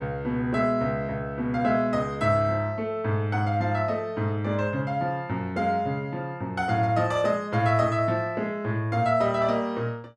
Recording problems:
none

